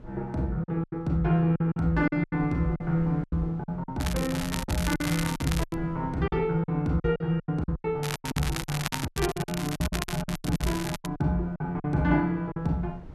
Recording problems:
wind on the microphone; below 180 Hz, SNR 16 dB
lost packets; 15% of the sound replaced, filled with silence
crackle; from 4 to 6 s and from 8 to 11 s; loose cable, SNR 7 dB

